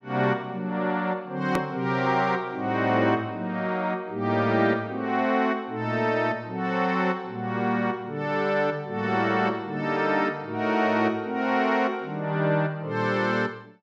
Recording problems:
edit click; at 1.5 s

